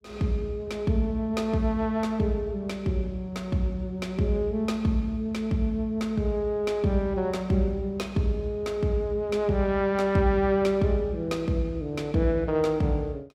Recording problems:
none

